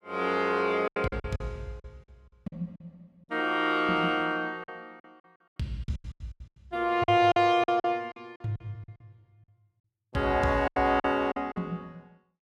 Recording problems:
lost packets; 13% of the sound replaced, filled with silence

